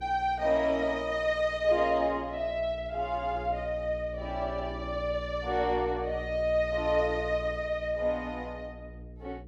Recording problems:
hum; 60 Hz, harmonics up to 480 Hz, SNR 14 dB

